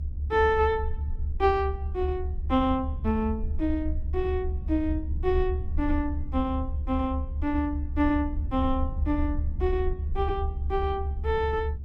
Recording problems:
low-frequency rumble; below 74 Hz, SNR 3 dB

